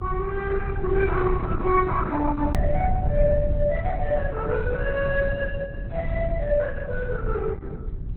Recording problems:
lossy codec; Opus, then AAC, log-spectral distance 3 dB
rumble; below 100 Hz, SNR 3 dB
click at an edit; at 2.5 s

